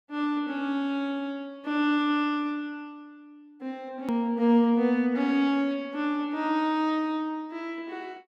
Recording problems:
click at an edit; at 4 s

